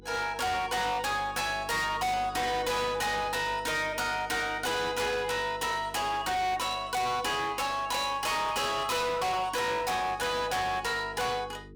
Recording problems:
distortion; hard clipping, signal-to-distortion ratio 6 dB
electrical hum; 50 Hz, harmonics up to 450 Hz, SNR 21 dB

